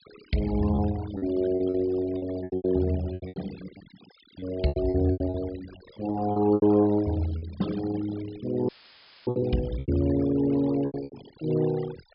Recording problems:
treble cut off; nothing above 5.5 kHz
denoising artefacts; signal-to-artefact ratio 18 dB
lost packets; 12% of the sound replaced, filled with repeated pitch periods
dropout; at 8.5 s for 0.5 s; filled with static

